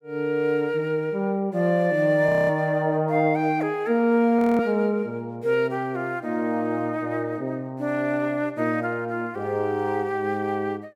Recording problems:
audio freezing; at 2.5 s and at 4.5 s

